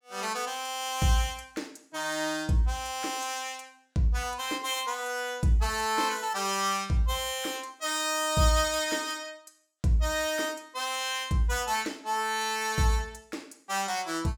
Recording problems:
none

